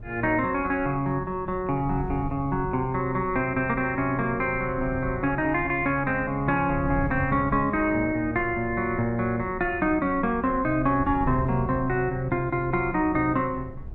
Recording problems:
wind on the microphone; below 130 Hz, SNR 13 dB

